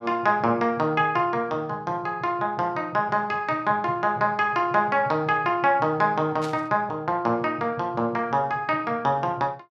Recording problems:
burst of static; at 6.5 s; peak -10 dB vs average level

